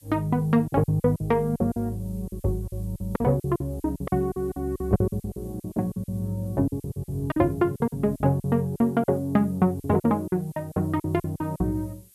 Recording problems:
hiss; slope +5 dB per octave, SNR 27 dB
lost packets; 16% of the sound replaced, filled with silence

